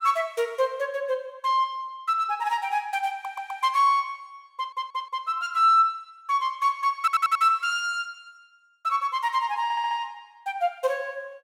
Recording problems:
stutter; 4 times, first at 3 s

